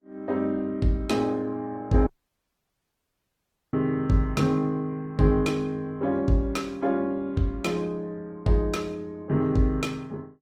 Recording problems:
lossy compression; Opus, log-spectral distance 2 dB, nothing above 18.3 kHz
dropout; at 2 s for 1.5 s

